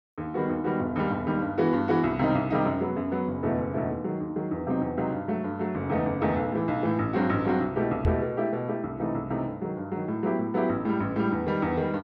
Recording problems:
microphone bump; at 8 s; peak +4 dB vs average level

